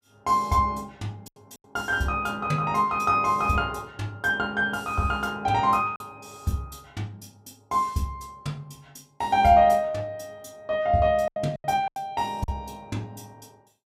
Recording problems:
lost packets; 3% of the sound replaced, filled with silence

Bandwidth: 15.5 kHz